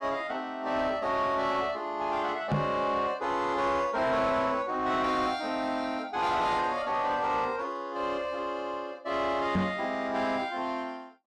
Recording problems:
distortion; soft clipping, signal-to-distortion ratio 10 dB
microphone bump; at 2.5 s and at 9.5 s; peak +5 dB vs average level

